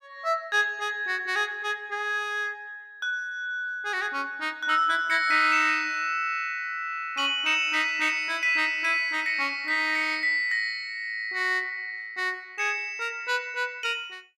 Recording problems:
none

